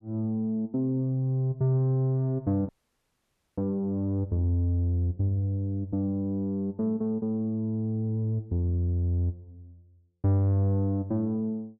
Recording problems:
audio freezing; at 2.5 s for 1 s

